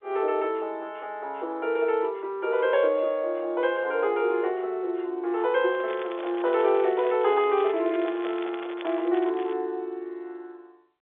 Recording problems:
phone line; 300 Hz to 3.7 kHz, G.711
handling noise; from 5.5 to 9 s; peak -11 dB vs average level
crackle; from 6 to 9.5 s; loose cable, SNR 19 dB

